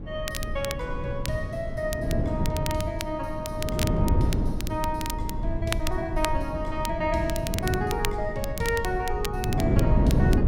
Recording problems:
low-frequency rumble; below 58 Hz, SNR 8 dB
wind noise; below 240 Hz, SNR 0 dB
crackling; vinyl, SNR 7 dB

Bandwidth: 16 kHz